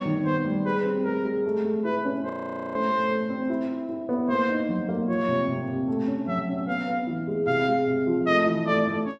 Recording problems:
frozen audio; at 2.5 s

